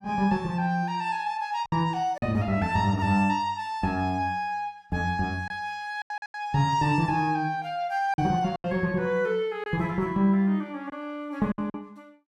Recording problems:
packet loss; 5% of the sound replaced, filled with silence

